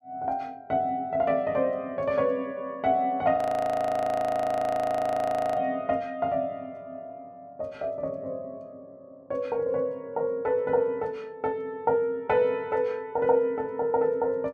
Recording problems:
audio freezing; at 3.5 s for 2 s

